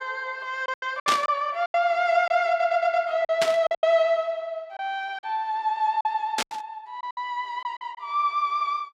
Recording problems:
lost packets; 9% of the sound replaced, filled with silence
burst of static; at 1 s, at 3.5 s and at 6.5 s; peak +4 dB vs average level
stutter; at 2.5 s

